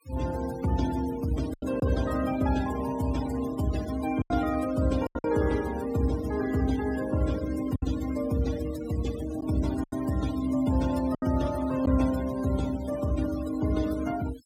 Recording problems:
denoising artefacts; signal-to-artefact ratio 14 dB
packet loss; 4% of the sound replaced, filled with silence

